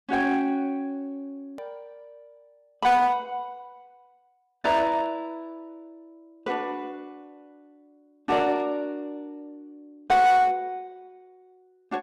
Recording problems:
distortion; hard clipping, uneven, signal-to-distortion ratio 10 dB
hard cut with a click; at 1.5 s

